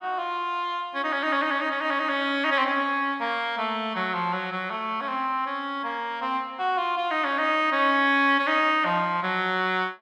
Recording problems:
none

